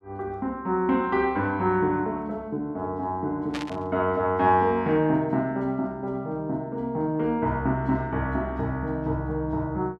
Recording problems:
burst of static; at 3.5 s; peak -4 dB vs average level

